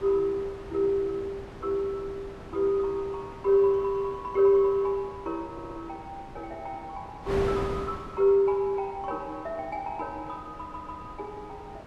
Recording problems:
wind noise; below 830 Hz, SNR 15 dB
stutter; at 5.5 s and at 11 s

